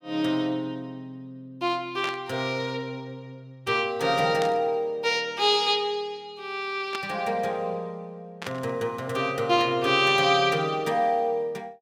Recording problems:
burst of static; 4 times, first at 2 s; peak -5 dB vs average level

